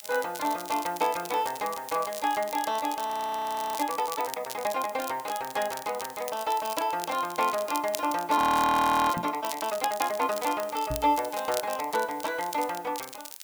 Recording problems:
background hiss; slope +1 dB per octave, SNR 20 dB
crackling; vinyl, SNR 11 dB
frozen audio; at 3 s for 0.5 s and at 8.5 s for 0.5 s
microphone bump; at 9 s and at 11 s; peak -3 dB vs average level

